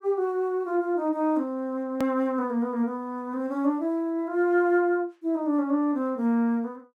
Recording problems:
hard cut with a click; at 2 s

